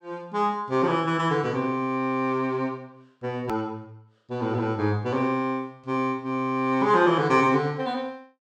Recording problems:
click at an edit; at 3.5 s

